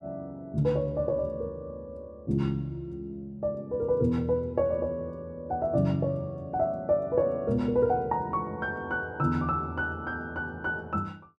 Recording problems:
none

